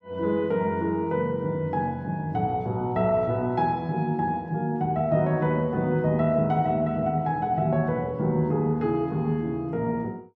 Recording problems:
none

